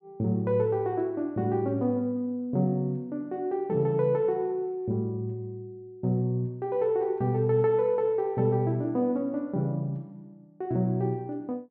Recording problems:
none

